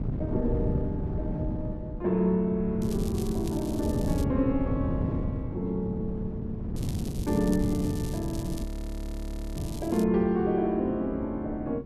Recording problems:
wind noise; below 200 Hz, SNR 4 dB
crackling; from 3 to 4 s and from 7 to 10 s; loose cable, SNR 17 dB
audio freezing; at 8.5 s for 1 s

